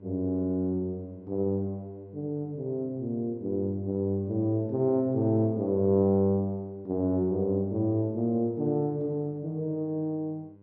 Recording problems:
electrical hum; 50 Hz, harmonics up to 1 kHz, SNR 25 dB

